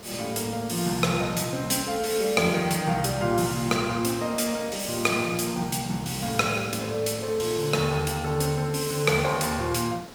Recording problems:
hiss; slope -4 dB per octave, SNR 17 dB

